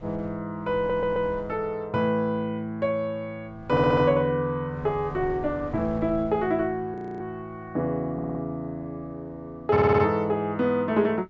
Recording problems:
treble cut off; nothing above 8 kHz
wind noise; below 240 Hz, SNR 19 dB
audio stuttering; 4 times, first at 1 s
frozen audio; at 7 s

